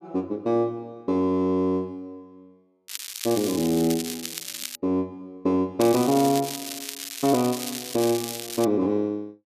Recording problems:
crackling; from 3 to 5 s and from 6 to 8.5 s; loose cable, SNR 8 dB

